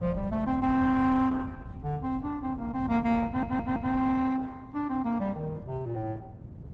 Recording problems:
lossy codec; Opus, log-spectral distance 2 dB, nothing above 7.6 kHz
rumble; below 160 Hz, SNR 12 dB
stutter; at 3.5 s

